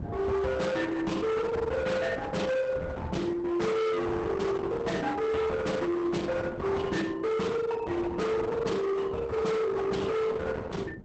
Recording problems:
lossy codec; Opus, log-spectral distance 3 dB, nothing above 8 kHz
distorted audio; hard clipping, signal-to-distortion ratio 7 dB
wind on the microphone; below 520 Hz, SNR 12 dB

